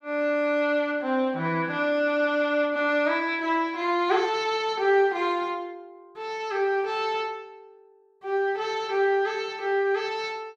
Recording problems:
none

